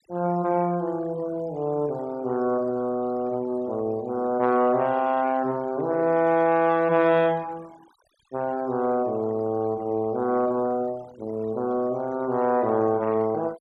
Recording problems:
noise reduction artefacts; signal-to-artefact ratio 25 dB

